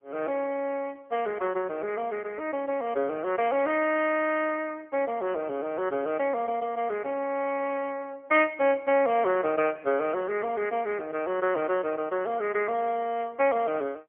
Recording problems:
phone line; 240 Hz to 3 kHz, AMR-NB, then MP3

